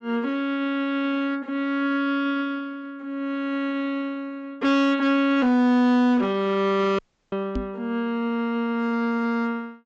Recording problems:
treble cut off; nothing above 8 kHz
distorted audio; hard clipping, signal-to-distortion ratio 11 dB
audio cutting out; at 7 s
knock on the microphone; at 7.5 s; peak -2 dB vs average level

